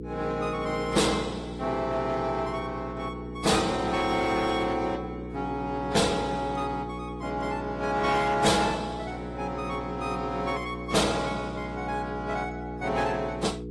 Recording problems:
codec artefacts; AAC, then AAC, log-spectral distance 3 dB
distortion; hard clipping, signal-to-distortion ratio 10 dB
hum; 60 Hz, harmonics up to 480 Hz, SNR 9 dB

